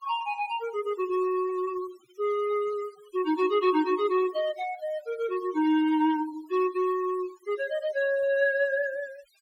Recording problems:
denoising artefacts; signal-to-artefact ratio 18 dB

